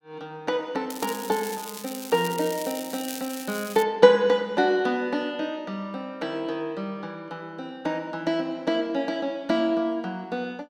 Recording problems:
crackle; from 1 to 4 s; loose cable, SNR 11 dB

